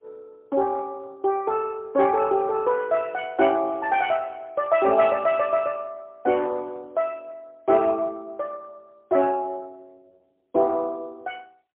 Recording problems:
phone line; 280 Hz to 3.7 kHz, AMR-NB, then MP3

